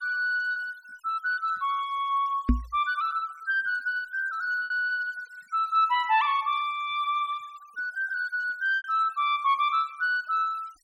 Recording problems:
noise reduction artefacts; signal-to-artefact ratio 27 dB
packet loss; 2% of the sound replaced, filled with repeated pitch periods
microphone thump; at 2.5 s; peak +7 dB vs average level

